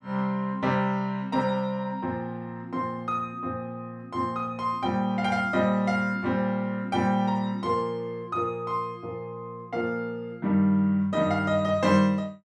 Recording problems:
none

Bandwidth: 12 kHz